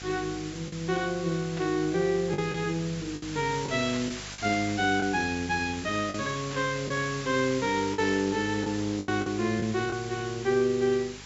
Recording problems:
treble cut off; nothing above 8 kHz
hum; 50 Hz, harmonics up to 800 Hz, SNR 19 dB
hiss; slope +1 dB per octave, SNR 12 dB
packet loss; 5% of the sound replaced, filled with the last packet
static burst; 4 times, first at 1.5 s; peak -9 dB vs average level

